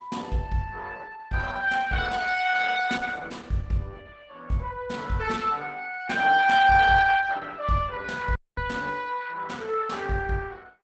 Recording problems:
codec artefacts; Opus, log-spectral distance 4 dB, nothing above 8 kHz
dropout; at 8.5 s

